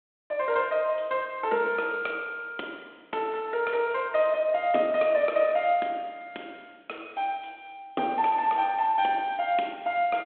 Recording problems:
phone line; 240 Hz to 3.5 kHz, G.726

